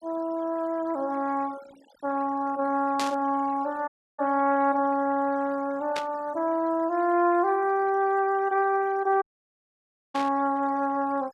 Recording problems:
noise reduction artefacts; signal-to-artefact ratio 24 dB
static burst; at 3 s, at 6 s and at 10 s; peak -2 dB vs average level
dropout; at 4 s and at 9 s for 1 s

